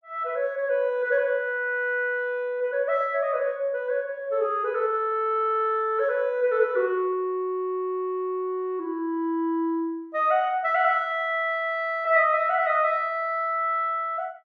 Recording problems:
none

